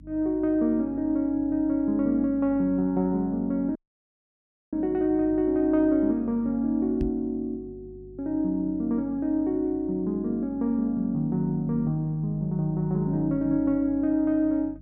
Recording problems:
electrical hum; 50 Hz, harmonics up to 300 Hz, SNR 21 dB
audio cutting out; at 4 s for 1 s
microphone bump; at 7 s; peak -1 dB vs average level

